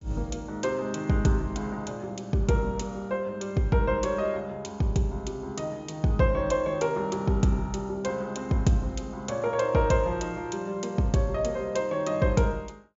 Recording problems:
treble cut off; nothing above 7.3 kHz

